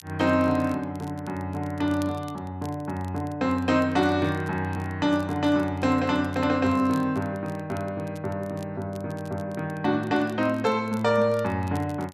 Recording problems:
crackle; vinyl, SNR 27 dB

